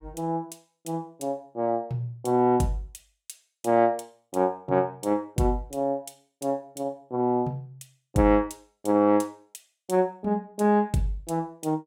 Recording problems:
none

